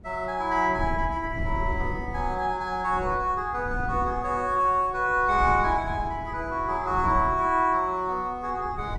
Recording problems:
wind on the microphone; below 120 Hz, SNR 11 dB

